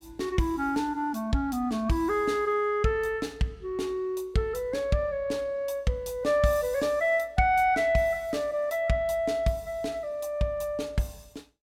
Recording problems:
none

